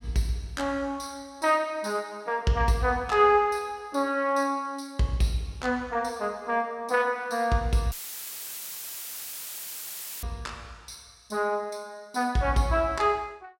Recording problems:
audio cutting out; at 8 s for 2.5 s; filled with static

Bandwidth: 16.5 kHz